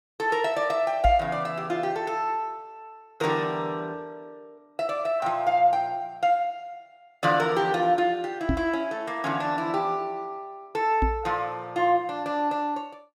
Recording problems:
microphone bump; at 1 s, at 8.5 s and at 11 s; peak +4 dB vs average level

